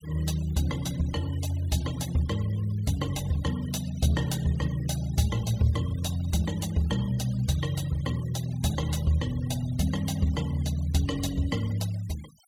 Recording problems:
noise reduction artefacts; signal-to-artefact ratio 18 dB

